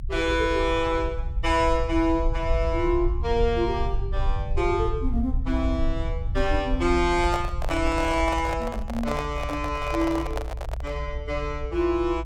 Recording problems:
low-frequency rumble; below 64 Hz, SNR 5 dB
microphone handling noise; from 7 to 11 s; peak -2 dB vs average level

